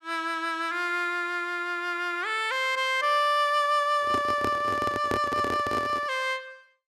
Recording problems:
microphone handling noise; from 4 to 6 s; peak 0 dB vs average level

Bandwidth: 14.5 kHz